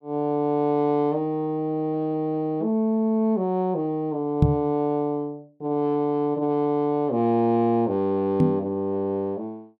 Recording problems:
microphone thump; at 4.5 s and at 8.5 s; peak +9 dB vs average level

